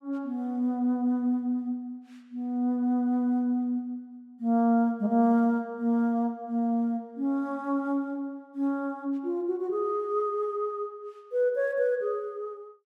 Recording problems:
none

